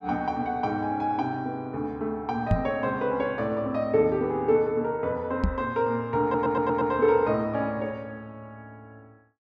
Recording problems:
microphone bump; at 2.5 s and at 5.5 s; peak +6 dB vs average level
audio stuttering; at 6 s

